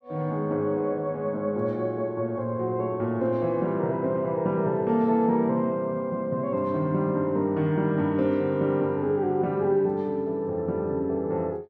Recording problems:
none

